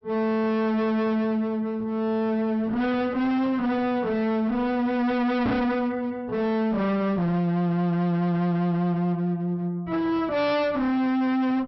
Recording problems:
low-pass filter; nothing above 5.7 kHz
distortion; hard clipping, uneven, signal-to-distortion ratio 5 dB
microphone thump; at 5.5 s; peak +6 dB vs average level

